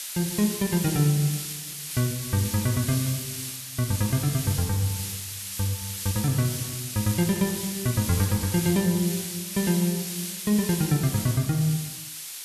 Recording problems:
background hiss; slope +5 dB per octave, SNR 6 dB

